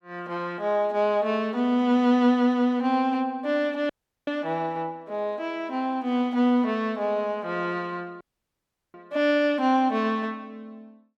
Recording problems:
dropout; at 4 s and at 8 s for 0.5 s

